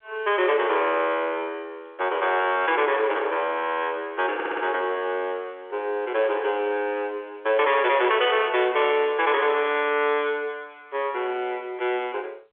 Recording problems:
telephone audio; 320 Hz to 3.5 kHz, G.711
distorted audio; soft clipping, signal-to-distortion ratio 12 dB
stutter; at 4.5 s

